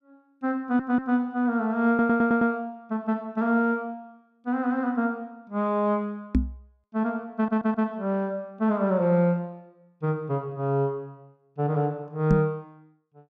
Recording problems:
stutter; at 0.5 s, at 2 s and at 7.5 s
microphone thump; at 6.5 s and at 12 s; peak +7 dB vs average level

